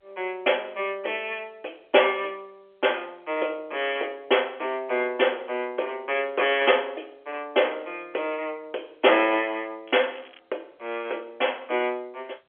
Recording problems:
telephone audio; 300 Hz to 3.4 kHz, G.711
crackling; at 10 s; loose cable, SNR 24 dB

